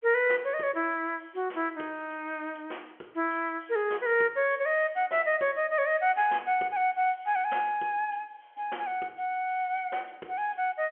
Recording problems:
phone line; 260 Hz to 3.3 kHz, G.711

